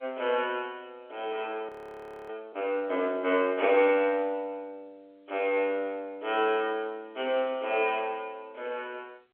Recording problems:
telephone audio; 340 Hz to 3.4 kHz, G.711
audio freezing; at 1.5 s for 0.5 s

